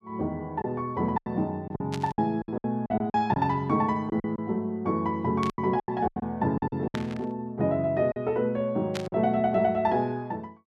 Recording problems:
lost packets; 10% of the sound replaced, filled with silence
burst of static; 4 times, first at 2 s; peak -3 dB vs average level

